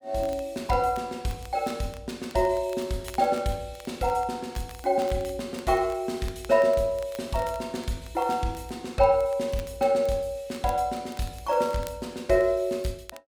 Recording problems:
crackle; vinyl, SNR 23 dB

